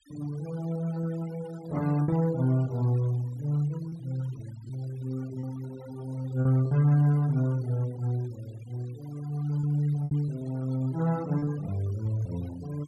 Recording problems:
denoising artefacts; signal-to-artefact ratio 22 dB
lost packets; 5% of the sound replaced, filled with repeated pitch periods

